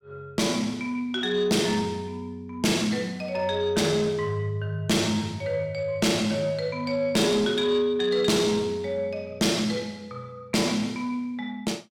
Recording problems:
distorted audio; soft clipping, signal-to-distortion ratio 12 dB

